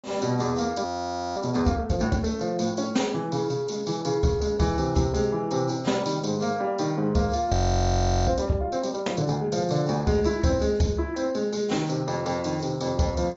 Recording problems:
low-pass filter; nothing above 6.5 kHz
codec artefacts; AAC, log-spectral distance 4 dB
audio freezing; at 1 s for 0.5 s and at 7.5 s for 0.5 s

